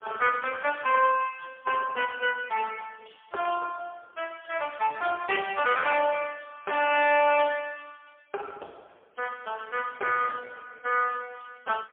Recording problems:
telephone audio; 370 Hz to 3.2 kHz, AMR-NB, then MP3

